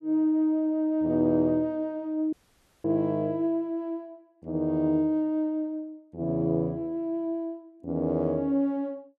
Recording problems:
audio cutting out; at 2.5 s for 0.5 s

